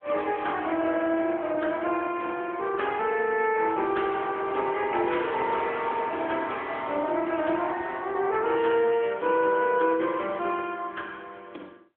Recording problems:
telephone audio; 260 Hz to 3.4 kHz, AMR-NB

